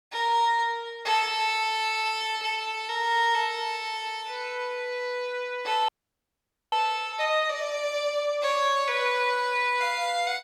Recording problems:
frozen audio; at 6 s for 1 s

